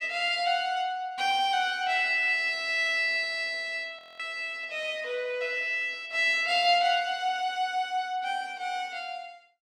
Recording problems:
audio freezing; at 4 s

